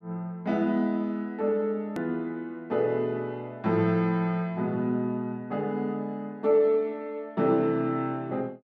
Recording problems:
hard cut with a click; at 2 s

